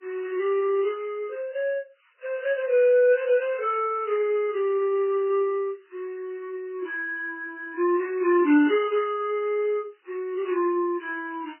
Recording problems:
codec artefacts; MP3, then MP3, log-spectral distance 2 dB, nothing above 2.4 kHz

